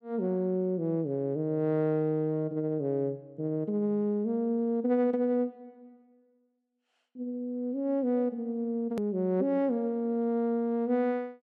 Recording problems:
hard cut with a click; at 9 s

